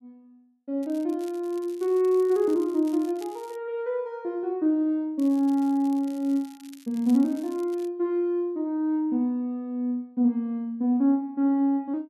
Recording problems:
crackling; from 1 to 3.5 s and from 5 to 8 s; loose cable, SNR 26 dB

